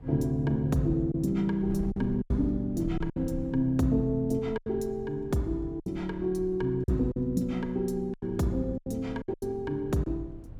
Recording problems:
wind on the microphone; below 130 Hz, SNR 15 dB
packet loss; 7% of the sound replaced, filled with silence

